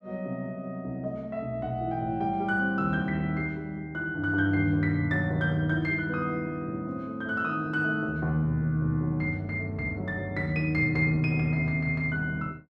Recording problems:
none

